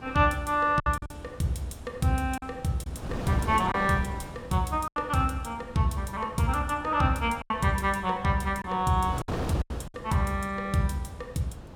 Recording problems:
wind noise; below 630 Hz, SNR 13 dB
lost packets; 5% of the sound replaced, filled with silence

